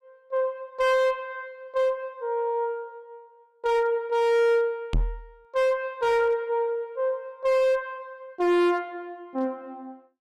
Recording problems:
distortion; hard clipping, uneven, signal-to-distortion ratio 10 dB
knock on the microphone; at 5 s; peak +2 dB vs average level

